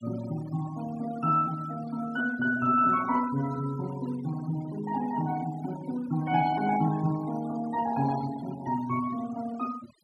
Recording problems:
denoising artefacts; signal-to-artefact ratio 18 dB

